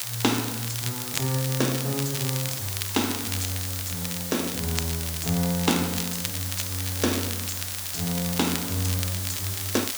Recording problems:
hiss; slope +1 dB per octave, SNR 2 dB
crackling; vinyl, SNR 5 dB

